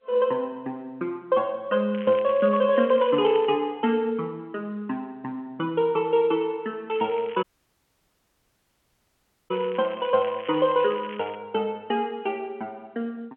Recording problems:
phone line; 220 Hz to 3.2 kHz, G.711
crackling; from 2 to 3.5 s and from 7 to 11 s; loose cable, SNR 20 dB
audio cutting out; at 7.5 s for 2 s

